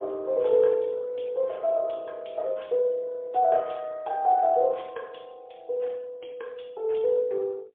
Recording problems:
telephone audio; 280 Hz to 3.7 kHz, AMR-NB, then MP3

